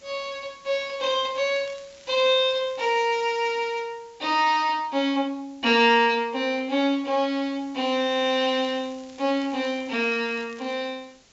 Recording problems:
low-pass filter; nothing above 7.5 kHz
background hiss; slope -1 dB per octave, SNR 29 dB
crackle; from 1 to 3 s and from 8.5 to 11 s; loose cable, SNR 27 dB

